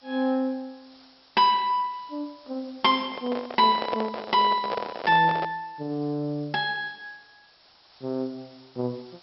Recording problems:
treble cut off; nothing above 5.5 kHz
hiss; SNR 27 dB
handling noise; from 3 to 5.5 s; peak +1 dB vs average level

